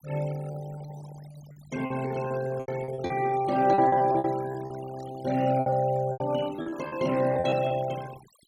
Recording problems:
noise reduction artefacts; signal-to-artefact ratio 17 dB
lost packets; 14% of the sound replaced, filled with repeated pitch periods
burst of static; at 5 s; peak -26 dB vs average level

